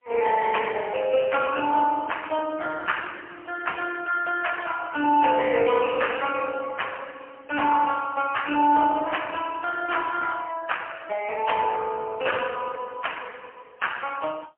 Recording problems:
telephone audio; 260 Hz to 3.1 kHz, AMR-NB, then MP3

